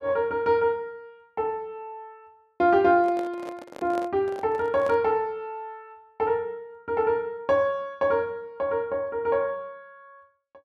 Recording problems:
microphone handling noise; from 3 to 5 s; peak -8 dB vs average level

